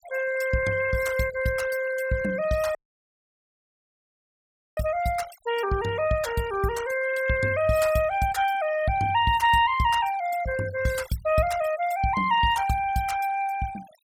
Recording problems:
noise reduction artefacts; signal-to-artefact ratio 16 dB
dropout; at 3 s for 2 s

